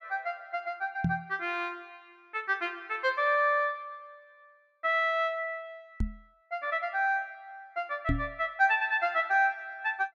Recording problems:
microphone bump; at 1 s, at 6 s and at 8 s; peak +4 dB vs average level

